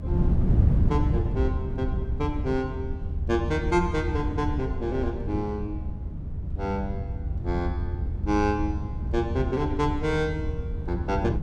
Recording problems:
low-frequency rumble; below 80 Hz, SNR 5 dB
wind noise; below 150 Hz, SNR 2 dB

